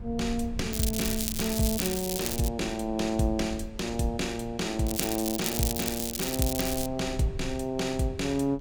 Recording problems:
wind on the microphone; below 90 Hz, SNR 13 dB
crackling; from 0.5 to 2.5 s and from 5 to 7 s; loose cable, SNR 2 dB

